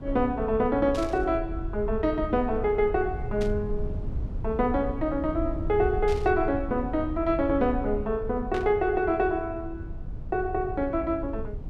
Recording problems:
low-frequency rumble; below 90 Hz, SNR 9 dB
static burst; 4 times, first at 1 s; peak -9 dB vs average level

